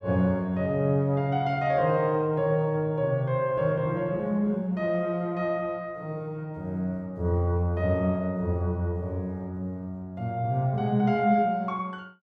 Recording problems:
none

